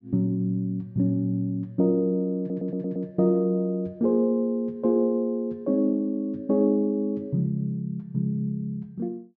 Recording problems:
audio stuttering; at 2.5 s

